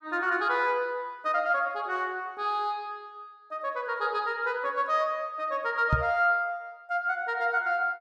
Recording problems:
microphone thump; at 6 s; peak +5 dB vs average level

